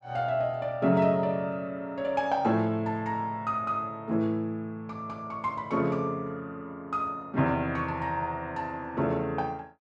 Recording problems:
none

